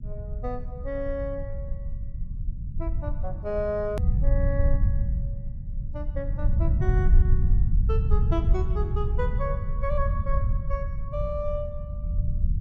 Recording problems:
rumble; below 80 Hz, SNR -5 dB
click at an edit; at 4 s

